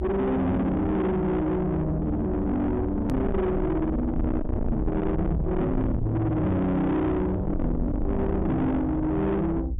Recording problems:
treble missing; nothing above 3.7 kHz
distorted audio; soft clipping, signal-to-distortion ratio 8 dB
rumble; below 250 Hz, SNR 5 dB
edit click; at 3 s

